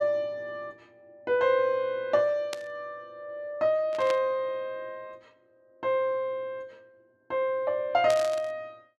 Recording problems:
static burst; at 2.5 s, at 4 s and at 8 s; peak -4 dB vs average level

